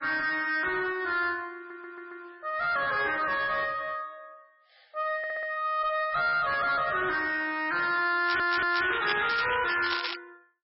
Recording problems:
lossy codec; MP3, log-spectral distance 5 dB, nothing above 5 kHz
distorted audio; soft clipping, signal-to-distortion ratio 10 dB
stutter; at 1.5 s, at 5 s and at 8 s
crackle; from 8.5 to 10 s; loose cable, SNR 6 dB

